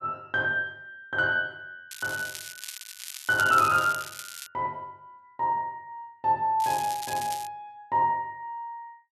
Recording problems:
crackle; from 2 to 4.5 s and at 6.5 s; loose cable, SNR 11 dB

